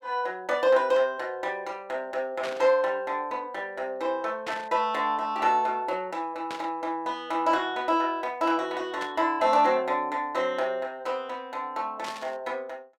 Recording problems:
burst of static; 5 times, first at 2.5 s; peak -5 dB vs average level

